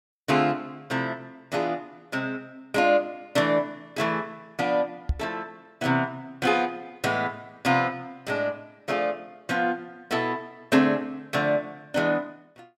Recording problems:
microphone bump; at 5 s; peak +4 dB vs average level

